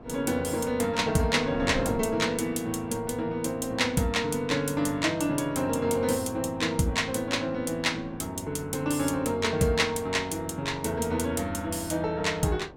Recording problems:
wind on the microphone; below 550 Hz, SNR 17 dB

